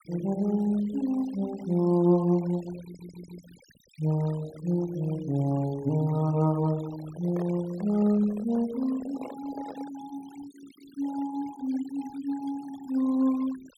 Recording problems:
noise reduction artefacts; signal-to-artefact ratio 21 dB
audio stuttering; at 3 s
microphone handling noise; from 7 to 10 s; peak -8 dB vs average level

